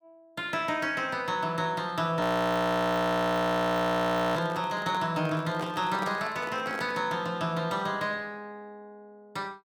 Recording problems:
audio freezing; at 2 s for 2 s
microphone handling noise; from 4.5 to 7 s; peak -4 dB vs average level

